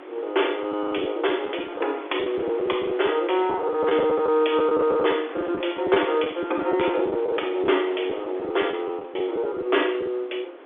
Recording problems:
phone line; 260 Hz to 3.5 kHz, G.711
wind on the microphone; below 1.1 kHz, SNR 16 dB
lost packets; 10% of the sound replaced, filled with the last packet

